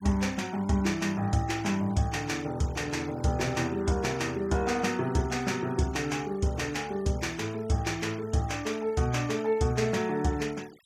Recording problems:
denoising artefacts; signal-to-artefact ratio 21 dB

